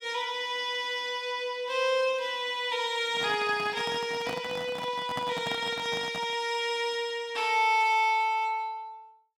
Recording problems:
handling noise; from 3 to 6.5 s; peak -4 dB vs average level

